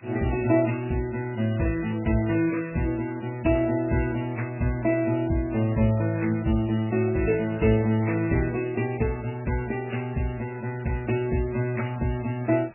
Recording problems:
lossy codec; MP2, then MP3, log-spectral distance 7 dB, nothing above 2.4 kHz
background hiss; SNR 28 dB

